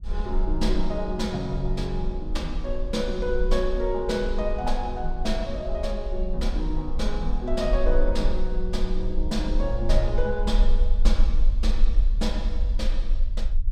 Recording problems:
rumble; below 40 Hz, strongest tone 22 Hz, SNR 0 dB

